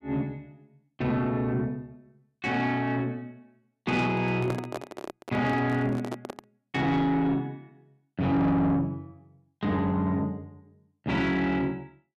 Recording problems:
distorted audio; soft clipping, signal-to-distortion ratio 10 dB
microphone handling noise; from 4 to 6.5 s; peak -1 dB vs average level

